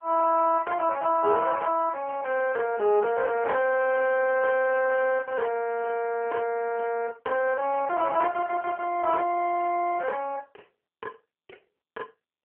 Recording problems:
phone line; 370 Hz to 2.6 kHz, AMR-NB

